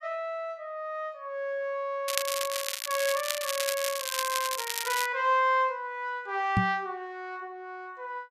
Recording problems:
crackling; from 2 to 5 s; loose cable, SNR 1 dB
microphone thump; at 6.5 s; peak +8 dB vs average level

